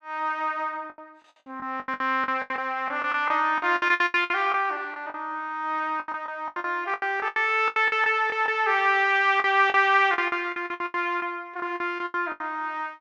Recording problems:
lost packets; 17% of the sound replaced, filled with the last packet

